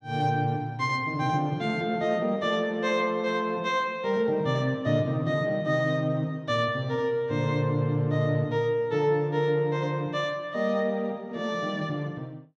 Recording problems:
none

